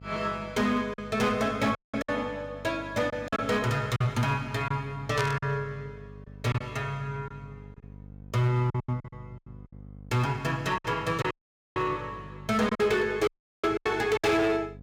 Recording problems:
distortion; hard clipping, signal-to-distortion ratio 11 dB
hum; 50 Hz, harmonics up to 750 Hz, SNR 18 dB
lost packets; 7% of the sound replaced, filled with silence
audio cutting out; at 2 s, at 11 s and at 13 s
burst of static; at 5 s; peak -2 dB vs average level

